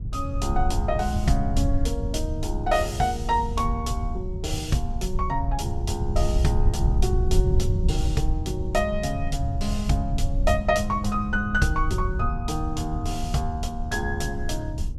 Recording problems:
rumble; below 88 Hz, SNR 1 dB

